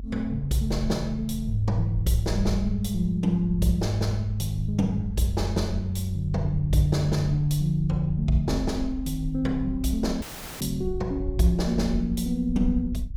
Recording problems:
low-frequency rumble; below 66 Hz, strongest tone 44 Hz, SNR 9 dB
dropout; at 10 s

